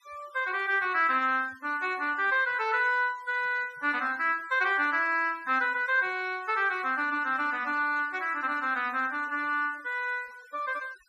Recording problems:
denoising artefacts; signal-to-artefact ratio 24 dB

